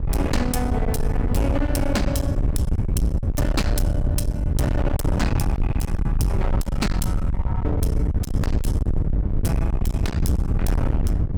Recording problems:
distortion; hard clipping, signal-to-distortion ratio 8 dB
wind noise; below 130 Hz, SNR -3 dB

